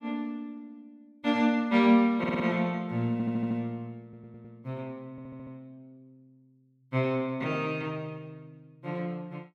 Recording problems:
stutter; 4 times, first at 2 s

